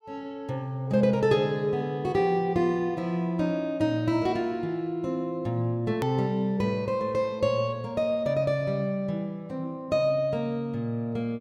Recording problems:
click at an edit; at 6 s

